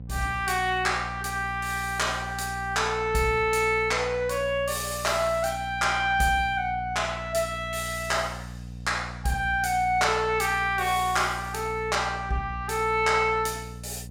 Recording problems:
mains hum; 60 Hz, harmonics up to 540 Hz, SNR 14 dB

